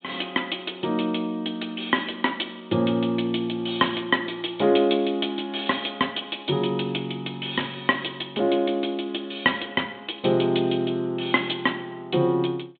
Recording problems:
treble cut off; nothing above 4 kHz

